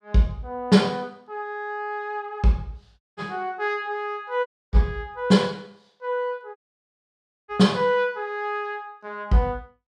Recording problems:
dropout; at 3 s, at 4.5 s and at 6.5 s for 1 s

